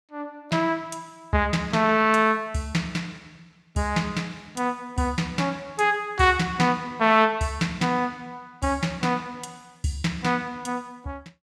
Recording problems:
none

